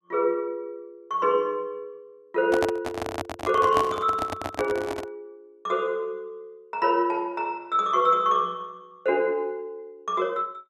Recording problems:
handling noise; from 2.5 to 5 s; peak +2 dB vs average level

